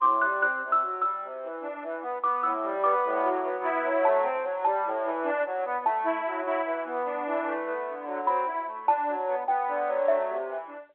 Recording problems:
telephone audio; 260 Hz to 3.6 kHz, G.711

